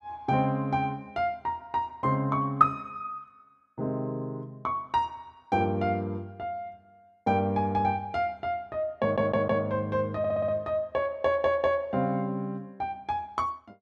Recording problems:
stutter; at 9 s, at 10 s and at 11 s

